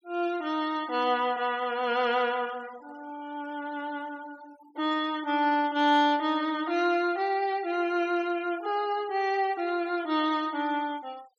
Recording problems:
denoising artefacts; signal-to-artefact ratio 22 dB

